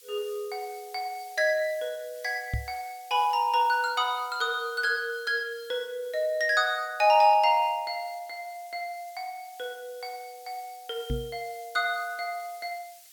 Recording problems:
hiss; SNR 23 dB
microphone bump; at 2.5 s and at 11 s; peak 0 dB vs average level

